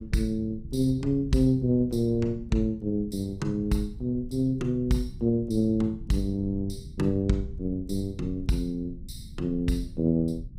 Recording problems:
low-frequency rumble; below 110 Hz, SNR 15 dB

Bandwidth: 15.5 kHz